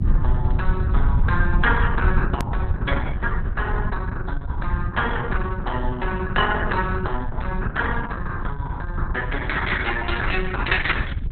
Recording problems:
codec artefacts; Opus, log-spectral distance 3 dB, nothing above 4 kHz
low-frequency rumble; below 84 Hz, SNR 0 dB
edit click; at 2.5 s

